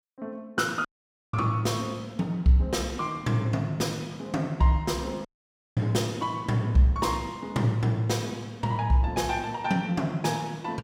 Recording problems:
audio cutting out; at 1 s and at 5.5 s for 0.5 s

